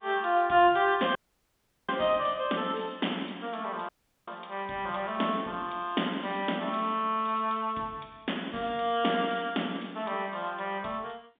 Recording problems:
phone line; 150 Hz to 3.7 kHz, G.711
dropout; at 1 s for 0.5 s and at 4 s

